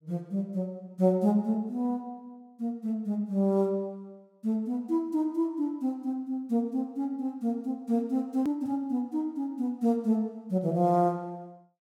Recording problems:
click at an edit; at 8.5 s

